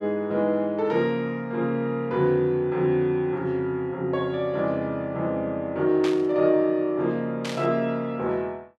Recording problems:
burst of static; at 6 s and at 7.5 s; peak -5 dB vs average level

